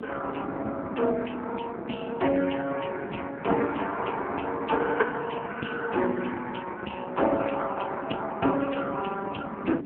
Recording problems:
phone line; 220 Hz to 3.2 kHz, AMR-NB
wind on the microphone; below 370 Hz, SNR 10 dB

